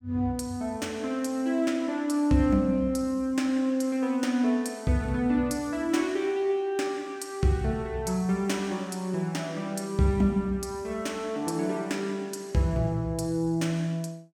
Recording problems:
none

